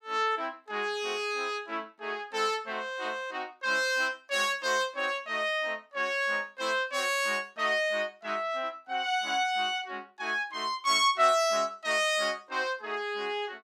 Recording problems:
none

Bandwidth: 17 kHz